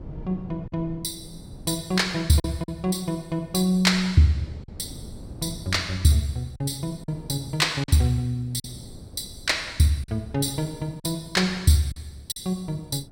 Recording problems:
wind on the microphone; below 230 Hz, SNR 19 dB
packet loss; 4% of the sound replaced, filled with silence

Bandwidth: 16.5 kHz